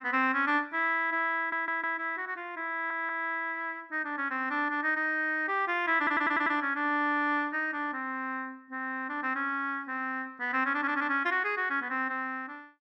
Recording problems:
audio stuttering; 4 times, first at 1.5 s

